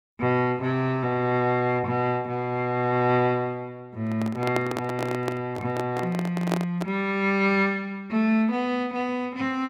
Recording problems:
microphone handling noise; from 4 to 7 s; peak +3 dB vs average level

